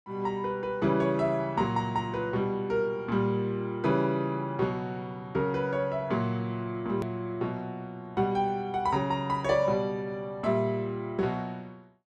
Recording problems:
click at an edit; at 7 s

